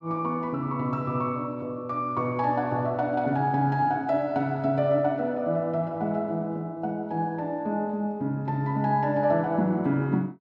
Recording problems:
none

